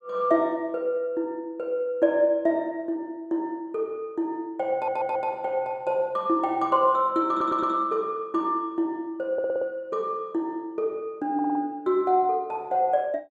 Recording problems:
audio stuttering; 4 times, first at 4.5 s

